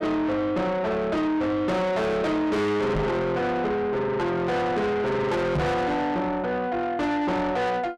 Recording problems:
distorted audio; soft clipping, signal-to-distortion ratio 6 dB
microphone bump; at 3 s and at 5.5 s; peak +5 dB vs average level

